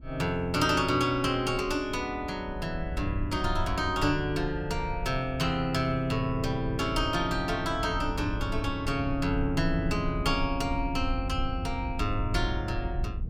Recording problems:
rumble; below 80 Hz, SNR 8 dB

